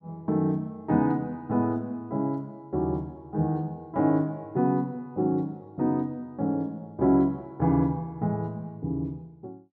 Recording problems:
none

